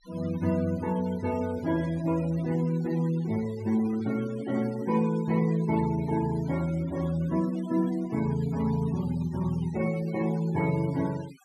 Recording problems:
noise reduction artefacts; signal-to-artefact ratio 19 dB

